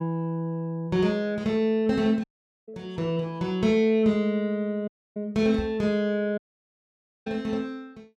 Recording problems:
audio cutting out; at 2 s, at 5 s and at 6.5 s for 1 s
microphone thump; at 5.5 s; peak -4 dB vs average level

